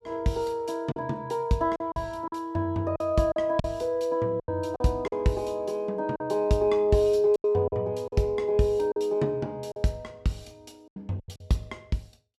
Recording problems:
packet loss; 8% of the sound replaced, filled with silence

